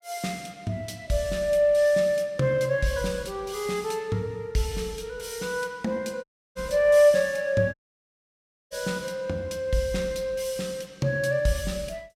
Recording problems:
audio cutting out; at 6 s and at 7.5 s for 1 s

